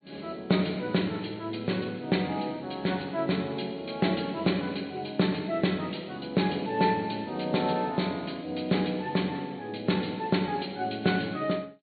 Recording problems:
low-pass filter; nothing above 4.4 kHz
codec artefacts; MP3, log-spectral distance 4 dB

